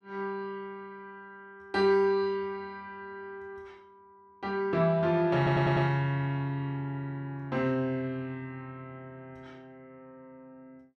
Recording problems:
stutter; at 5.5 s

